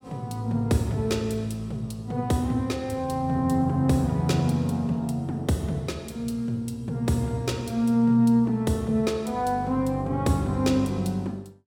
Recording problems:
none

